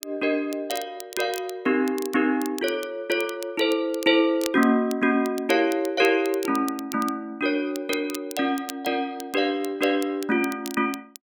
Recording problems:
crackling; vinyl, SNR 16 dB

